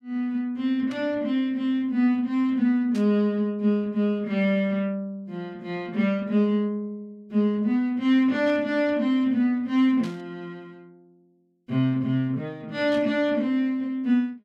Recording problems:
burst of static; 5 times, first at 1 s; peak -13 dB vs average level

